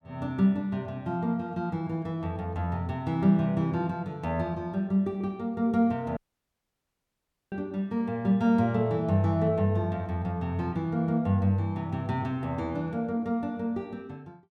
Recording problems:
audio cutting out; at 6 s for 1.5 s

